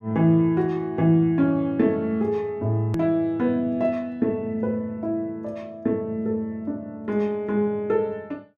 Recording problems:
click at an edit; at 3 s

